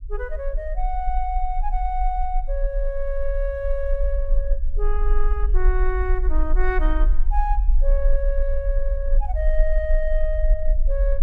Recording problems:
low-frequency rumble; below 40 Hz, strongest tone 20 Hz, SNR -4 dB

